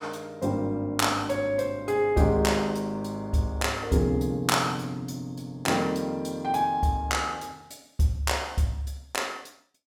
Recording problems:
none

